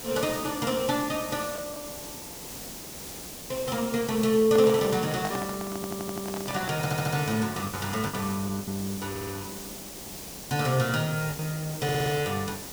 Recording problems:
hiss; SNR 9 dB
lost packets; 4% of the sound replaced, filled with the last packet
handling noise; from 4.5 to 7 s; peak -3 dB vs average level
audio stuttering; 4 times, first at 5.5 s

